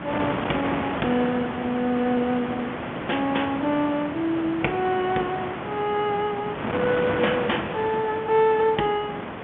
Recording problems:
phone line; 190 Hz to 3.5 kHz, G.711
wind on the microphone; below 1.5 kHz, SNR 5 dB

